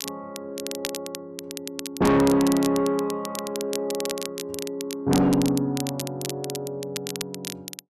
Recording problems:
distortion; soft clipping, signal-to-distortion ratio 7 dB
crackling; vinyl, SNR 10 dB

